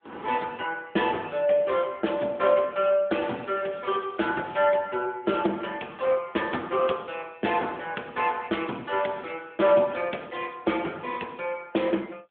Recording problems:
phone line; 240 Hz to 3.5 kHz, AMR-NB
crackle; from 3 to 5 s; loose cable, SNR 27 dB

